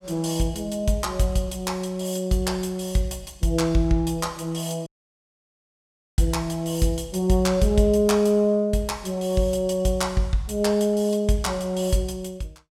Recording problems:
dropout; at 5 s for 1.5 s

